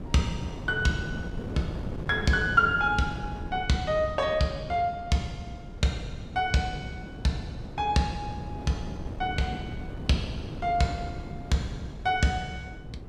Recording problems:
wind on the microphone; below 290 Hz, SNR 10 dB

